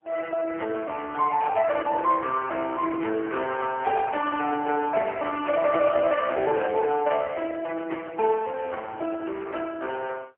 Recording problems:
phone line; 300 Hz to 3 kHz, AMR-NB, then MP3

